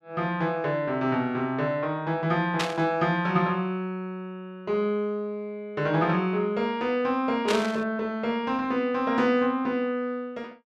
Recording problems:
burst of static; at 2.5 s and at 7.5 s; peak +3 dB vs average level

